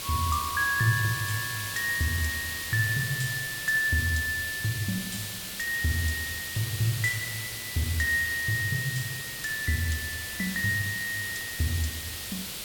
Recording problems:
hiss; SNR 5 dB

